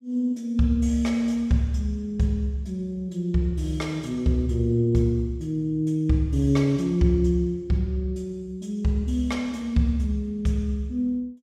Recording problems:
none

